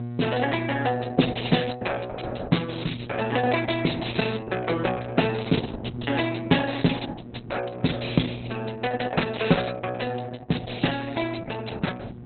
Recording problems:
lossy compression; Opus, log-spectral distance 8 dB, nothing above 4.1 kHz
hum; 60 Hz, harmonics up to 840 Hz, SNR 12 dB

